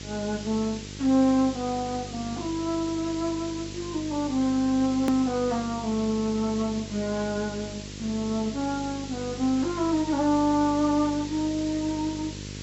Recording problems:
low-pass filter; nothing above 7.8 kHz
lossy compression; AAC, log-spectral distance 5 dB
mains hum; 50 Hz, harmonics up to 650 Hz, SNR 13 dB
background hiss; slope +3 dB per octave, SNR 14 dB
click at an edit; at 5 s

